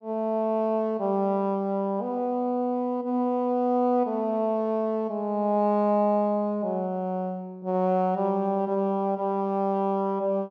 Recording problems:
none

